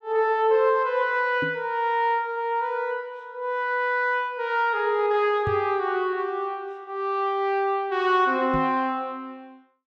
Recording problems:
microphone bump; at 1.5 s, at 5.5 s and at 8.5 s; peak -3 dB vs average level

